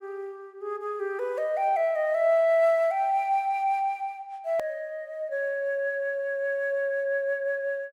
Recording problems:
click at an edit; at 4.5 s

